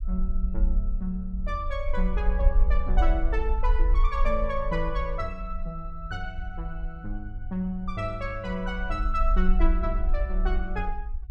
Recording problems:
rumble; below 48 Hz, SNR -2 dB

